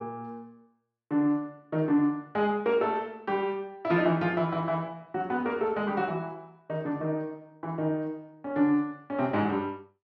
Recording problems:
none

